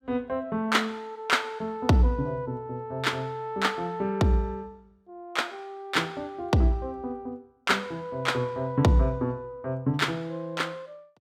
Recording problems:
none

